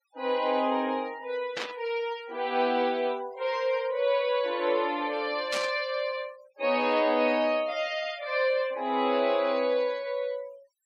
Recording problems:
denoising artefacts; signal-to-artefact ratio 22 dB
burst of static; at 1.5 s and at 5.5 s; peak -1 dB vs average level

